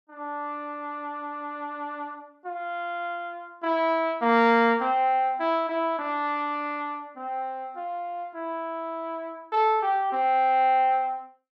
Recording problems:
none

